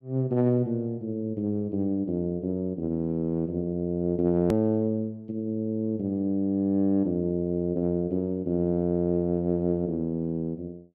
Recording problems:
click at an edit; at 4.5 s

